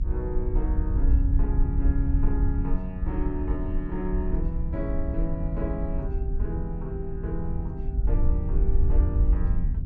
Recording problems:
treble cut off; nothing above 8 kHz
hum; 50 Hz, harmonics up to 300 Hz, SNR 9 dB
wind on the microphone; below 64 Hz, SNR -6 dB

